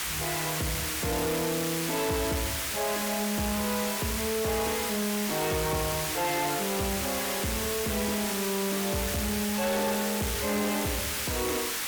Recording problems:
distortion; soft clipping, signal-to-distortion ratio 11 dB
hiss; slope +1 dB per octave, SNR 0 dB

